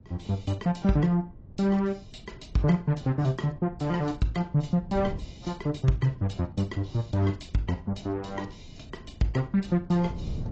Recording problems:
lossy compression; AAC, log-spectral distance 2 dB, nothing above 17.1 kHz
wind noise; below 160 Hz, SNR 17 dB

